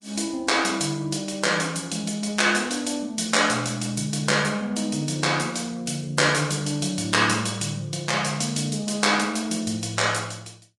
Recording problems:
lossy codec; Vorbis, log-spectral distance 5 dB, nothing above 10.4 kHz

